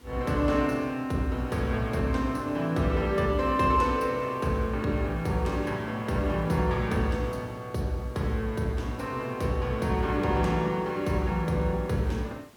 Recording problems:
background hiss; slope -4 dB per octave, SNR 26 dB

